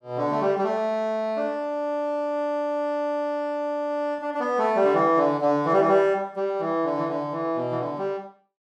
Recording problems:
none

